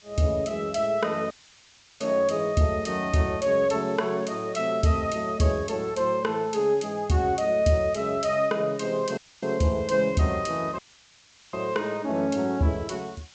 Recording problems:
treble cut off; nothing above 8 kHz
hiss; slope +2 dB per octave, SNR 27 dB
dropout; at 1.5 s for 0.5 s, at 9 s and at 11 s for 0.5 s

